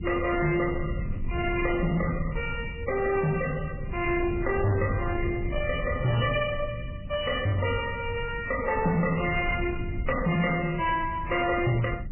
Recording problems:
lossy compression; MP3, log-spectral distance 7 dB, nothing above 2.9 kHz
distortion; soft clipping, signal-to-distortion ratio 10 dB
rumble; below 140 Hz, SNR 8 dB

